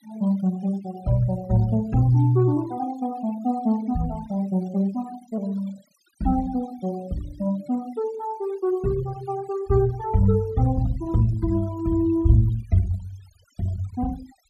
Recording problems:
denoising artefacts; signal-to-artefact ratio 23 dB

